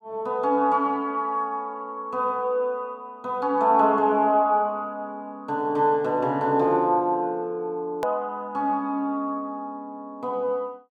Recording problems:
edit click; at 8 s

